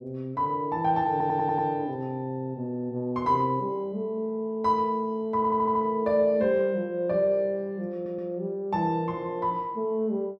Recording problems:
stutter; at 1 s, at 5.5 s and at 8 s

